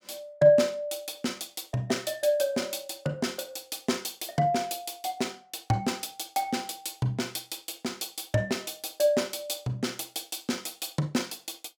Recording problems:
none

